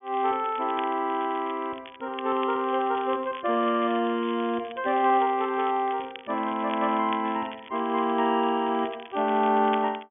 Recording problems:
low-pass filter; nothing above 3.4 kHz
crackling; vinyl, SNR 19 dB

